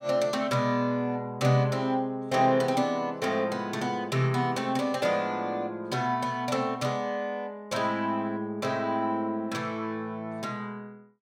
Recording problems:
none

